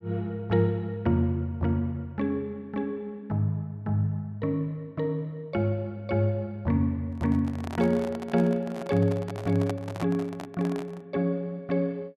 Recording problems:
microphone handling noise; from 7 to 11 s; peak -3 dB vs average level

